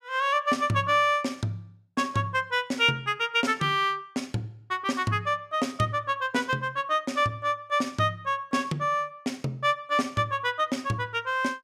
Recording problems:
none

